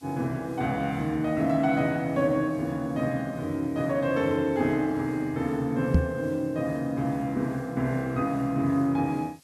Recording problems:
background hiss; slope +1 dB per octave, SNR 29 dB
knock on the microphone; at 6 s; peak +9 dB vs average level

